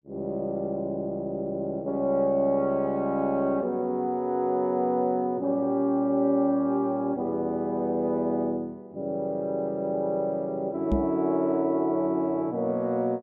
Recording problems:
microphone thump; at 11 s; peak +4 dB vs average level

